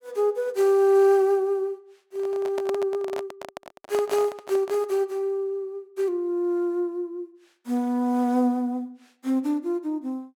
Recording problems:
handling noise; from 2 to 5 s; peak -5 dB vs average level

